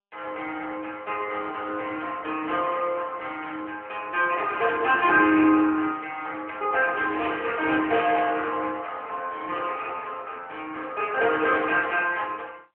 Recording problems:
phone line; 320 Hz to 3 kHz, AMR-NB

